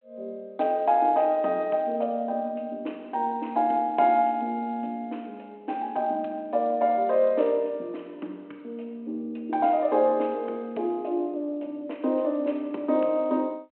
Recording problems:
phone line; 190 Hz to 3.3 kHz, G.726

